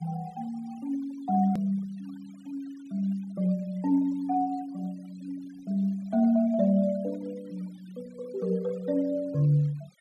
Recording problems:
denoising artefacts; signal-to-artefact ratio 26 dB
hard cut with a click; at 1.5 s

